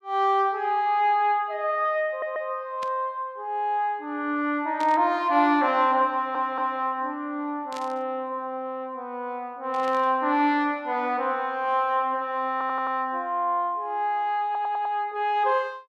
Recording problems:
stutter; 4 times, first at 2 s
burst of static; 4 times, first at 3 s; peak -10 dB vs average level

